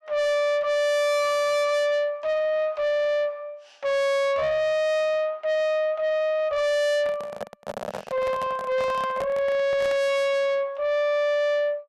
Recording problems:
distorted audio; soft clipping, signal-to-distortion ratio 7 dB
handling noise; from 7 to 10 s; peak -4 dB vs average level

